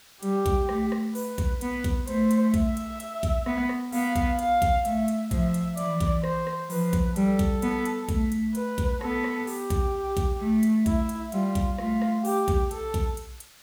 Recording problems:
hiss; slope +1 dB per octave, SNR 24 dB

